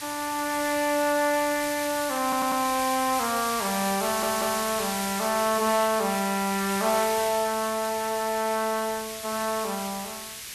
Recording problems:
hiss; SNR 6 dB
stutter; at 2 s and at 4 s

